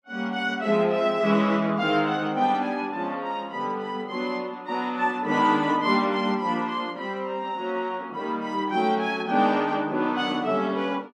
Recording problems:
none

